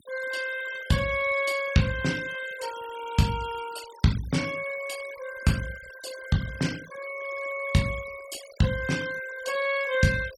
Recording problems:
noise reduction artefacts; signal-to-artefact ratio 15 dB

